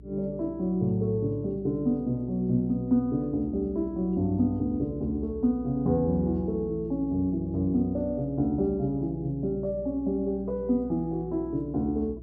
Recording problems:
hum; 60 Hz, harmonics up to 420 Hz, SNR 17 dB

